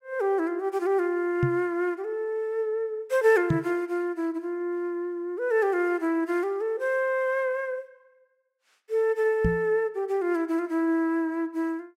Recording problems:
microphone bump; at 1.5 s, at 3.5 s and at 9.5 s; peak +5 dB vs average level

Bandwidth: 16 kHz